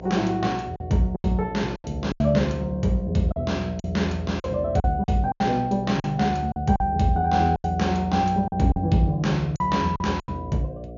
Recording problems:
treble cut off; nothing above 6.9 kHz
mains hum; 60 Hz, harmonics up to 720 Hz, SNR 15 dB
packet loss; 9% of the sound replaced, filled with silence

